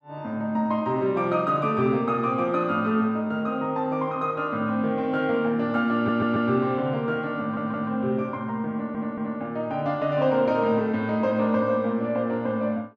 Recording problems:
stutter; at 6 s, at 7.5 s and at 8.5 s

